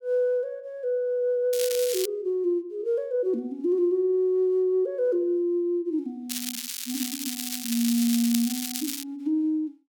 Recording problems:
crackle; at 1.5 s and from 6.5 to 9 s; loose cable, SNR 5 dB

